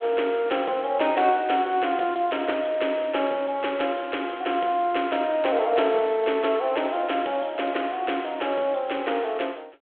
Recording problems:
phone line; 300 Hz to 3.4 kHz, G.726

